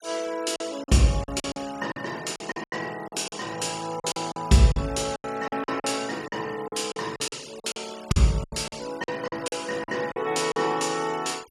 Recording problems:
noise reduction artefacts; signal-to-artefact ratio 19 dB
packet loss; 13% of the sound replaced, filled with silence

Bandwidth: 14.5 kHz